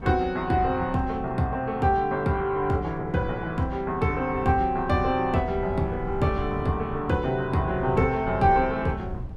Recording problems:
wind on the microphone; below 140 Hz, SNR 13 dB

